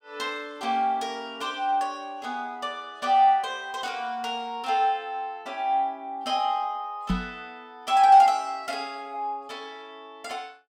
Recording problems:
knock on the microphone; at 7 s; peak +2 dB vs average level

